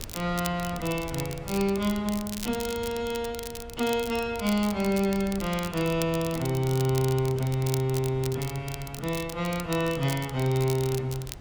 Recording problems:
wind noise; below 250 Hz, SNR 17 dB
crackle; vinyl, SNR 12 dB

